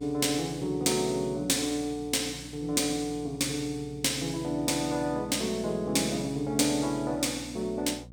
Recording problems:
electrical hum; 60 Hz, harmonics up to 600 Hz, SNR 19 dB

